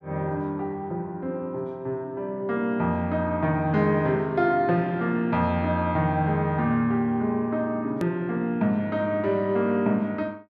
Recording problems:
hard cut with a click; at 8 s

